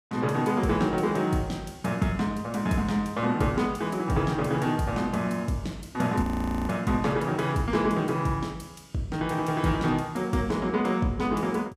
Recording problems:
frozen audio; at 6 s

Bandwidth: 15.5 kHz